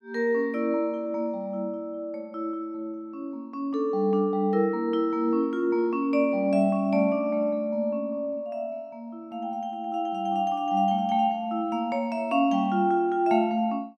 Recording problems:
none

